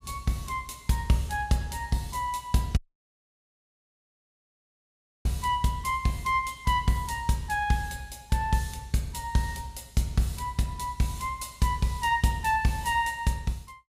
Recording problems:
audio cutting out; at 3 s for 2.5 s

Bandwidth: 15.5 kHz